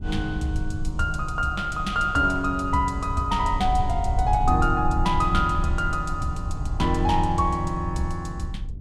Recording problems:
rumble; below 84 Hz, SNR 6 dB

